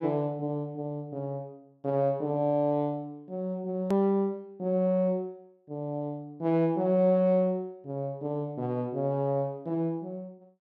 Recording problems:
hard cut with a click; at 4 s

